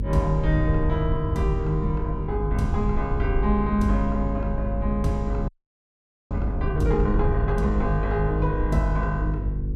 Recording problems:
hum; 50 Hz, harmonics up to 450 Hz, SNR 3 dB
wind on the microphone; below 88 Hz, SNR 5 dB
audio freezing; at 5.5 s for 1 s

